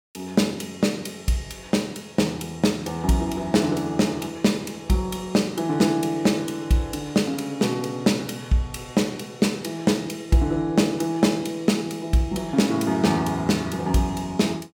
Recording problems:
none

